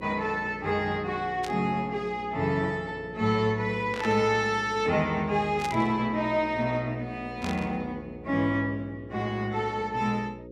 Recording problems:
hum; 60 Hz, harmonics up to 540 Hz, SNR 15 dB
static burst; 4 times, first at 1.5 s; peak -5 dB vs average level

